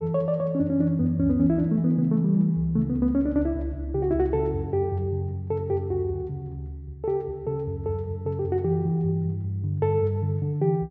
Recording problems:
none

